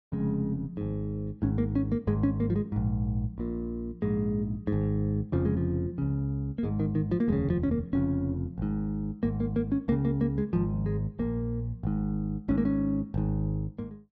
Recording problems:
none

